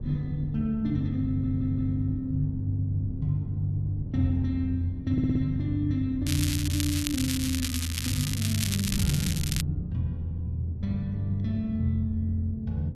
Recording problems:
wind noise; below 170 Hz, SNR 9 dB
stutter; at 1.5 s and at 5 s
crackle; from 6.5 to 9.5 s; loose cable, SNR 4 dB

